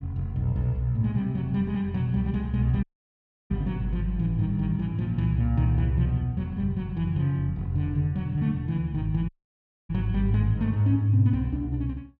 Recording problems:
dropout; at 3 s for 0.5 s and at 9.5 s for 0.5 s

